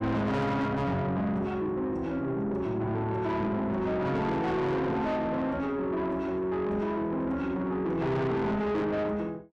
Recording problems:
distortion; soft clipping, signal-to-distortion ratio 8 dB

